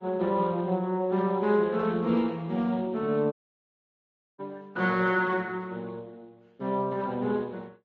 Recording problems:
lossy compression; Speex, then Vorbis, log-spectral distance 3 dB, nothing above 7.1 kHz
dropout; at 3.5 s for 1 s

